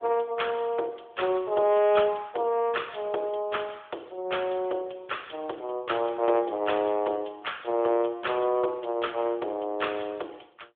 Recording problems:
phone line; 300 Hz to 3.5 kHz, AMR-NB

